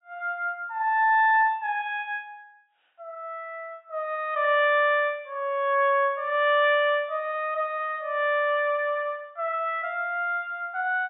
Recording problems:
low-pass filter; nothing above 4 kHz

